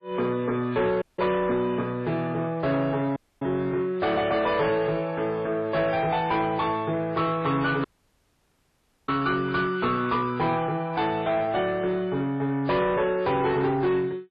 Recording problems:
codec artefacts; MP3, log-spectral distance 2 dB
distorted audio; soft clipping, signal-to-distortion ratio 11 dB
audio cutting out; at 1 s, at 3 s and at 8 s for 1 s

